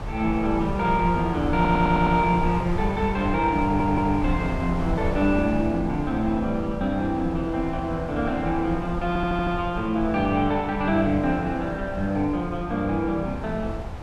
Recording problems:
wind on the microphone; below 190 Hz, SNR 9 dB
audio stuttering; at 1.5 s, at 3.5 s and at 9 s

